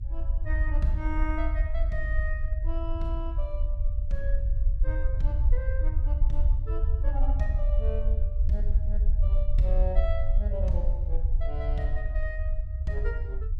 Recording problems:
low-frequency rumble; below 60 Hz, SNR -8 dB

